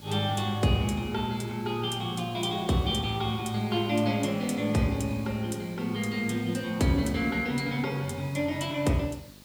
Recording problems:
hum; 50 Hz, harmonics up to 700 Hz, SNR 24 dB
background hiss; SNR 22 dB

